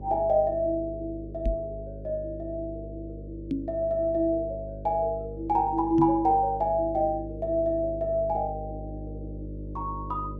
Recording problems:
hum; 50 Hz, harmonics up to 600 Hz, SNR 12 dB
microphone thump; at 1.5 s, at 3.5 s and at 6 s; peak +1 dB vs average level

